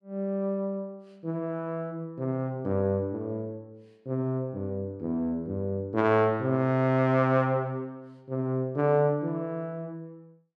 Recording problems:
none

